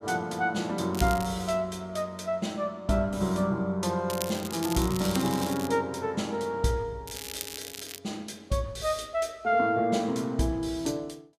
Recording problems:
crackling; at 1 s, from 4 to 5.5 s and at 7 s; loose cable, SNR 9 dB

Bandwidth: 14.5 kHz